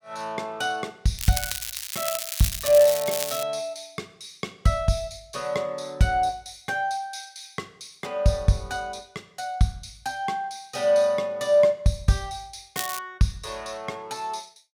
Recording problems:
crackle; from 1 to 3.5 s and at 13 s; loose cable, SNR 4 dB

